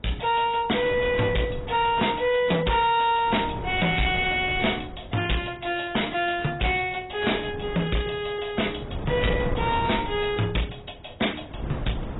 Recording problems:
lossy compression; AAC, log-spectral distance 7 dB, nothing above 3.8 kHz
distorted audio; hard clipping, uneven, signal-to-distortion ratio 7 dB
wind on the microphone; below 420 Hz, SNR 10 dB

